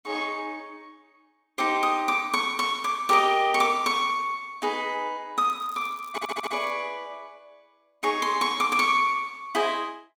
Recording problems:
crackle; from 5.5 to 6.5 s; loose cable, SNR 28 dB
audio stuttering; at 6 s

